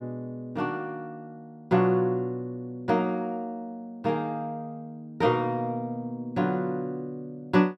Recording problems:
none

